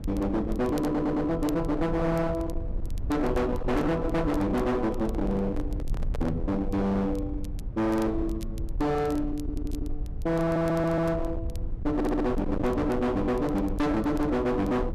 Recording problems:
distorted audio; hard clipping, signal-to-distortion ratio 6 dB
low-frequency rumble; below 130 Hz, SNR 8 dB
crackling; vinyl, SNR 27 dB
stutter; 4 times, first at 0.5 s
microphone handling noise; from 5 to 6.5 s; peak -6 dB vs average level

